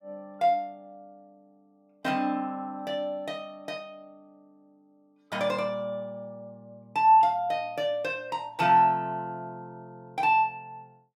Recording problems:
none

